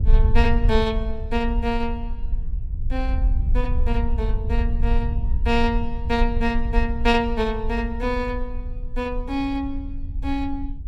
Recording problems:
wind noise; below 60 Hz, SNR 1 dB

